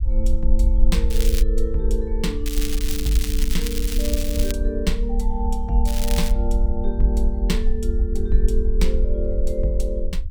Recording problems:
low-frequency rumble; below 50 Hz, SNR -3 dB
crackling; at 1 s, from 2.5 to 4.5 s and at 6 s; loose cable, SNR 4 dB

